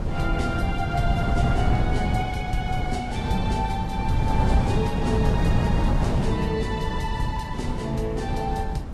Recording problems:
codec artefacts; Vorbis, then Vorbis, log-spectral distance 2 dB, nothing above 12.3 kHz
electrical hum; 50 Hz, harmonics up to 650 Hz, SNR 20 dB
wind on the microphone; below 190 Hz, SNR -2 dB

